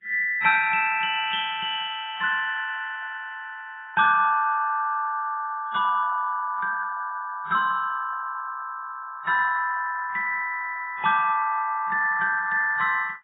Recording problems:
lossy compression; MP2, then AAC, log-spectral distance 4 dB, nothing above 3.2 kHz

